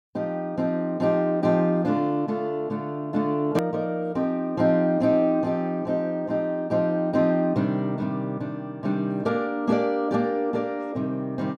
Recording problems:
edit click; at 3.5 s

